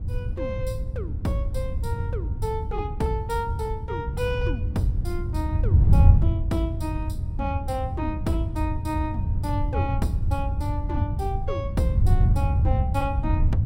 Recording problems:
hum; 50 Hz, harmonics up to 600 Hz, SNR 19 dB
wind on the microphone; below 100 Hz, SNR -5 dB

